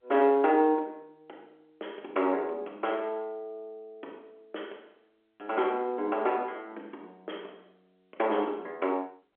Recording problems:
phone line; 280 Hz to 3.5 kHz, G.711

